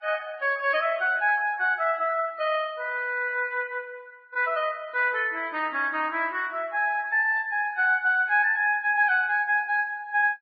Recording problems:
codec artefacts; Vorbis, then AAC, log-spectral distance 2 dB, nothing above 4.5 kHz

